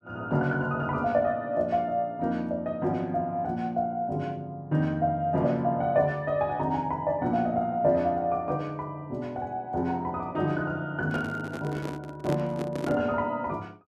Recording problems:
handling noise; from 11 to 13 s; peak 0 dB vs average level

